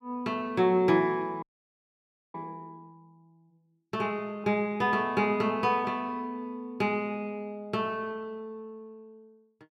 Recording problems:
frozen audio; at 1.5 s for 1 s

